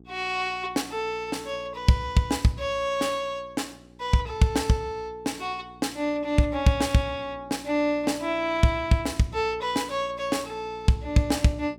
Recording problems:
mains hum; 60 Hz, harmonics up to 780 Hz, SNR 23 dB

